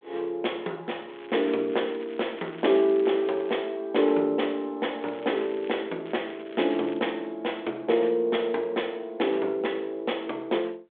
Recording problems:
phone line; 300 Hz to 3.5 kHz, G.726
crackling; from 1 to 3.5 s, at 5 s and from 6 to 7 s; loose cable, SNR 22 dB

